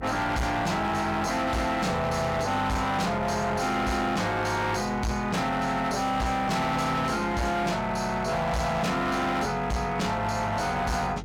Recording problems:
distorted audio; hard clipping, signal-to-distortion ratio 8 dB
hum; 50 Hz, harmonics up to 450 Hz, SNR 15 dB

